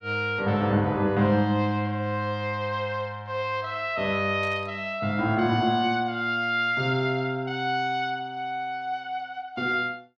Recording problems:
static burst; at 4.5 s; peak -14 dB vs average level

